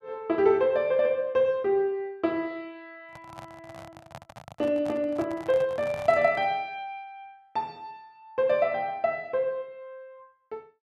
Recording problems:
microphone handling noise; from 3 to 6.5 s; peak -9 dB vs average level

